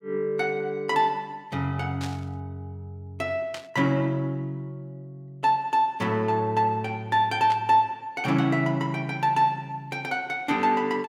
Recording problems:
static burst; at 2 s, at 3.5 s and at 7.5 s; peak -7 dB vs average level

